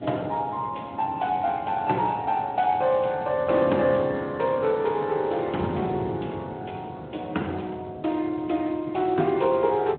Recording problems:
phone line; 220 Hz to 3.4 kHz, Speex
wind noise; below 310 Hz, SNR 15 dB

